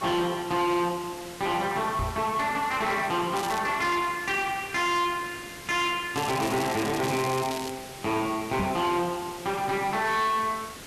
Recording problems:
distortion; soft clipping, signal-to-distortion ratio 10 dB
hiss; slope -2 dB per octave, SNR 14 dB
knock on the microphone; at 2 s and at 8.5 s; peak 0 dB vs average level
crackle; at 3.5 s and from 6 to 7.5 s; loose cable, SNR 11 dB

